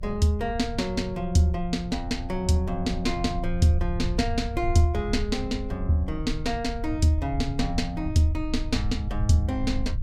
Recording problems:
low-frequency rumble; below 84 Hz, SNR 7 dB

